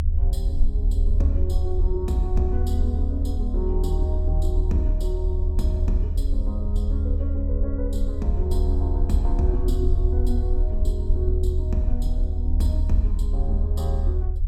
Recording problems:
rumble; below 76 Hz, strongest tone 36 Hz, SNR -6 dB

